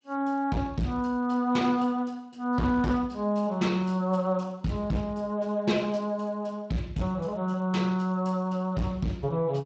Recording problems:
lossy compression; Speex, log-spectral distance 2 dB
distortion; hard clipping, uneven, signal-to-distortion ratio 11 dB

